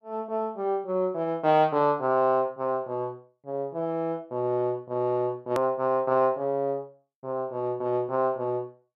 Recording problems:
click at an edit; at 5.5 s

